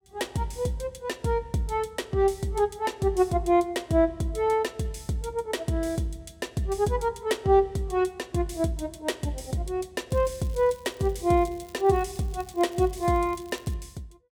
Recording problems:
crackling; from 10 to 14 s; loose cable, SNR 25 dB

